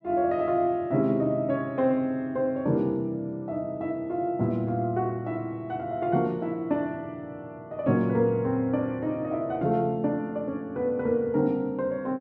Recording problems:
none

